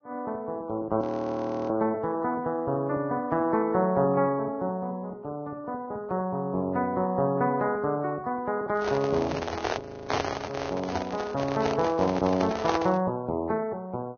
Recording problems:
codec artefacts; Vorbis, log-spectral distance 3 dB, nothing above 6.3 kHz
frozen audio; at 1 s for 0.5 s and at 10 s
microphone handling noise; from 8.5 to 13 s; peak +4 dB vs average level

